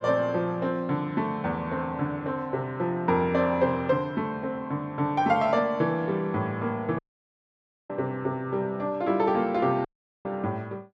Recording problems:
audio cutting out; at 7 s for 1 s and at 10 s

